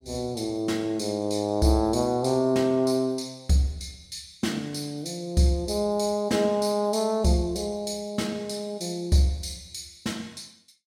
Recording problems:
none

